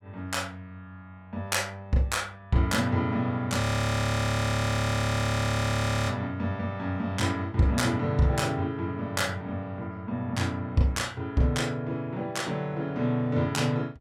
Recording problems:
audio freezing; at 3.5 s for 2.5 s

